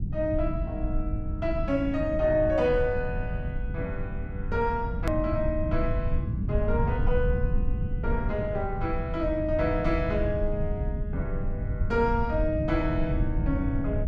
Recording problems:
low-frequency rumble; below 110 Hz, SNR 2 dB
click at an edit; at 5 s

